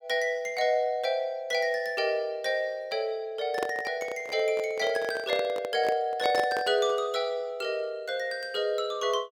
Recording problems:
microphone handling noise; from 3.5 to 7 s; peak +1 dB vs average level

